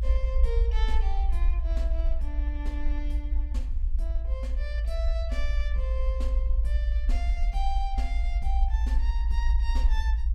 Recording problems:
low-frequency rumble; below 56 Hz, SNR -11 dB

